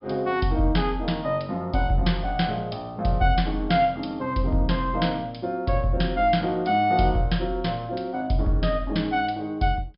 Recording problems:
treble missing; nothing above 5.5 kHz

